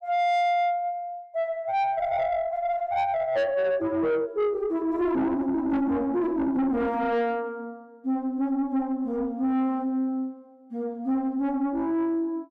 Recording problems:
distortion; soft clipping, signal-to-distortion ratio 7 dB

